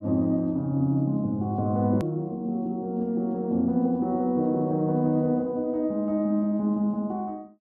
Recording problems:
edit click; at 2 s

